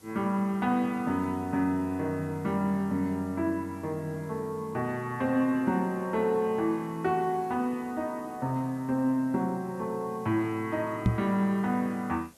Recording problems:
background hiss; SNR 27 dB
microphone thump; at 11 s; peak +8 dB vs average level

